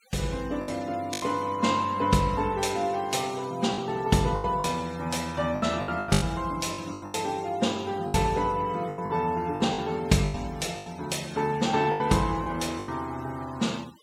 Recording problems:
denoising artefacts; signal-to-artefact ratio 20 dB
lost packets; 10% of the sound replaced, filled with the last packet

